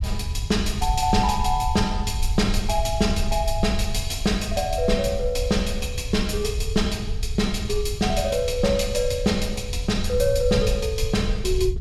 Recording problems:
rumble; below 76 Hz, SNR 5 dB

